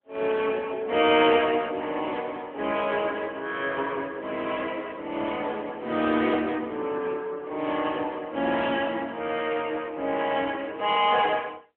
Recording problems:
phone line; 240 Hz to 3.3 kHz, AMR-NB

